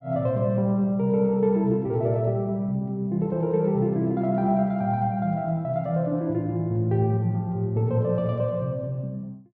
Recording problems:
none

